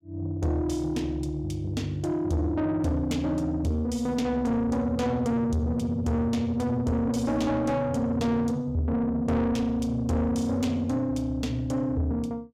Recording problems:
distorted audio; soft clipping, signal-to-distortion ratio 10 dB

